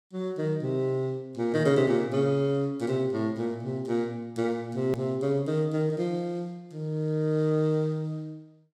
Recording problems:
hard cut with a click; at 5 s

